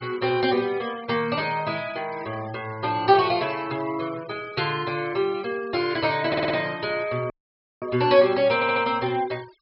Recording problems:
treble missing; nothing above 5.2 kHz
denoising artefacts; signal-to-artefact ratio 20 dB
static burst; at 6 s; peak -16 dB vs average level
audio stuttering; at 6.5 s and at 8.5 s
audio cutting out; at 7.5 s for 0.5 s

